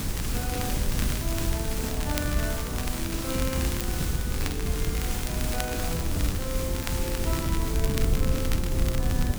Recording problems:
hiss; SNR 2 dB
low-frequency rumble; below 100 Hz, SNR 0 dB
crackle; vinyl, SNR 6 dB

